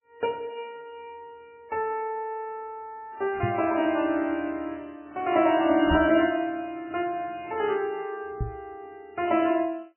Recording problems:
codec artefacts; MP3, log-spectral distance 2 dB, nothing above 2.4 kHz
knock on the microphone; at 3.5 s, at 6 s and at 8.5 s; peak +2 dB vs average level

